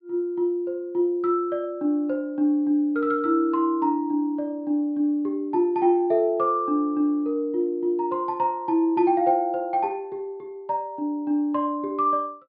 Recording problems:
treble missing; nothing above 5 kHz

